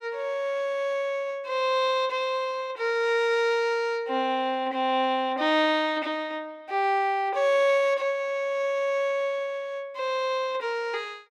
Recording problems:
none

